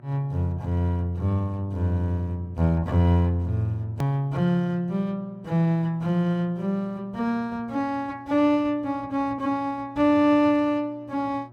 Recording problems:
hum; 60 Hz, harmonics up to 960 Hz, SNR 24 dB
click at an edit; at 4 s

